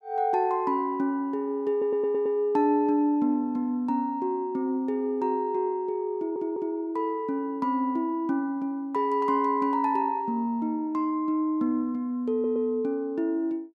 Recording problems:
stutter; at 1.5 s, at 6 s and at 12 s

